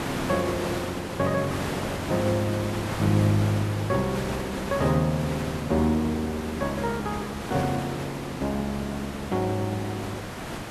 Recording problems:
hiss; slope -5 dB per octave, SNR 6 dB

